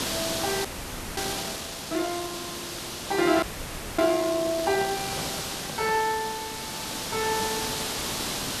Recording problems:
hiss; slope -2 dB per octave, SNR 3 dB
frozen audio; at 0.5 s for 0.5 s and at 3.5 s for 0.5 s
handling noise; from 3 to 6 s; peak -6 dB vs average level

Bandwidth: 13.5 kHz